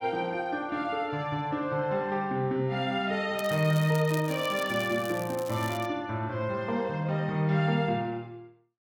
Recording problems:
crackling; from 3.5 to 6 s; loose cable, SNR 16 dB

